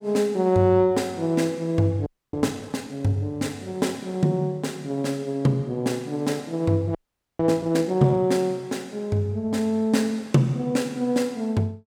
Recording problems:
frozen audio; at 2 s and at 7 s

